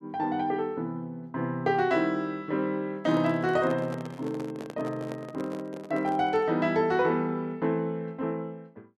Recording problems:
handling noise; from 3 to 6.5 s; peak -7 dB vs average level

